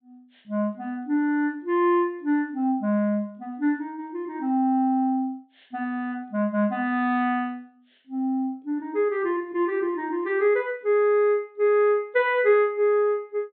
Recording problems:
treble missing; nothing above 4 kHz

